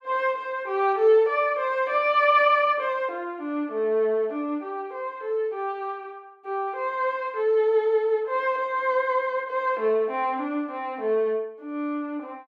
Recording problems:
none

